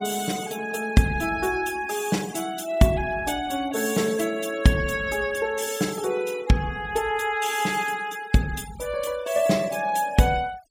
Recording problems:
noise reduction artefacts; signal-to-artefact ratio 18 dB

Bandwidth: 16 kHz